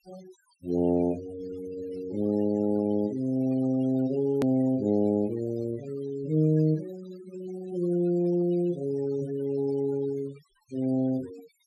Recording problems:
denoising artefacts; signal-to-artefact ratio 22 dB
click at an edit; at 4.5 s

